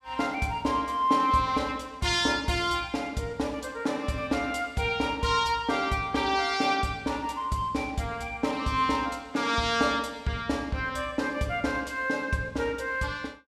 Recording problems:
none

